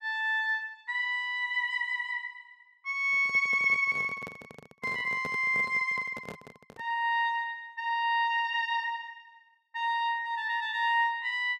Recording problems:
handling noise; from 3 to 7 s; peak -7 dB vs average level

